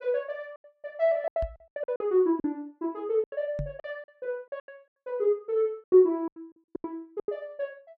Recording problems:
lost packets; 13% of the sound replaced, filled with silence
microphone thump; at 1.5 s and at 3.5 s; peak -2 dB vs average level

